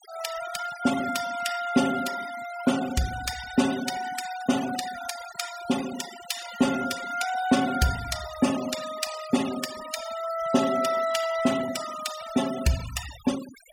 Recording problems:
noise reduction artefacts; signal-to-artefact ratio 11 dB

